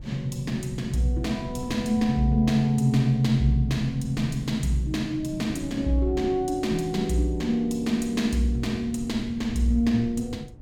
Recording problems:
wind noise; below 110 Hz, SNR 17 dB

